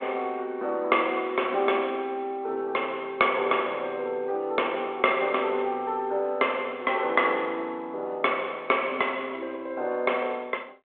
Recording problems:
phone line; 320 Hz to 3.3 kHz, G.726

